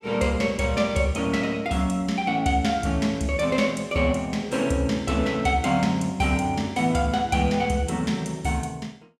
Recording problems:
none

